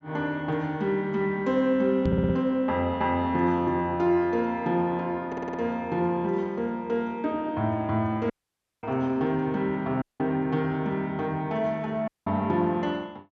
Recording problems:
low-pass filter; nothing above 8 kHz
knock on the microphone; at 2 s; peak +4 dB vs average level
audio stuttering; at 2 s and at 5.5 s
dropout; at 8.5 s for 0.5 s, at 10 s and at 12 s

